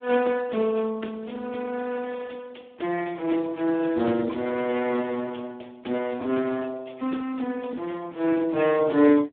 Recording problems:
telephone audio; 240 Hz to 2.7 kHz, Speex

